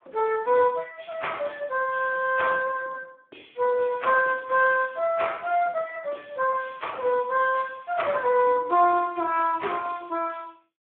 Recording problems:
phone line; 300 Hz to 3.7 kHz, Speex

